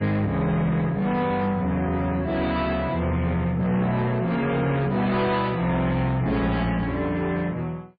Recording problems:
lossy compression; MP3, log-spectral distance 2 dB, nothing above 4.2 kHz
distortion; soft clipping, signal-to-distortion ratio 10 dB

